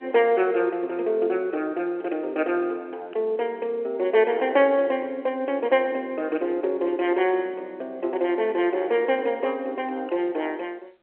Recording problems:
telephone audio; 300 Hz to 3.2 kHz, G.711

